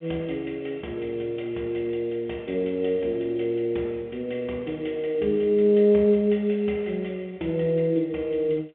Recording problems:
telephone audio; 260 Hz to 3.9 kHz, G.711

